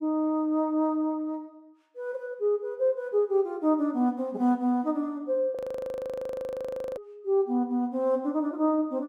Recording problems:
audio freezing; at 5.5 s for 1.5 s

